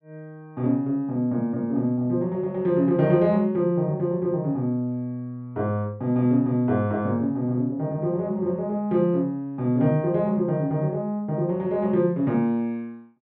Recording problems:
none

